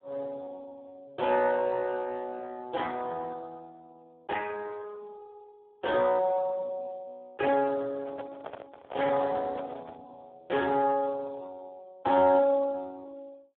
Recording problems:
phone line; 320 Hz to 3.6 kHz, Speex
microphone handling noise; from 8 to 10 s; peak -8 dB vs average level

